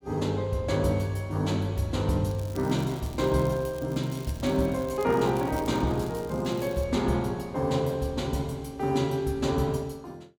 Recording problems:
crackling; from 2.5 to 4.5 s and from 4.5 to 7 s; loose cable, SNR 22 dB

